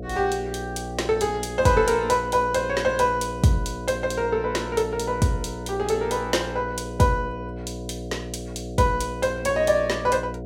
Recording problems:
electrical hum; 60 Hz, harmonics up to 720 Hz, SNR 10 dB

